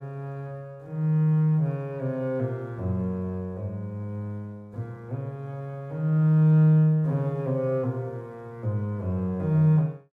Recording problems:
none

